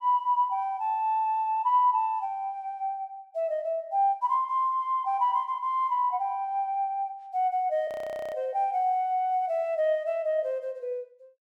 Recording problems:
audio freezing; at 8 s

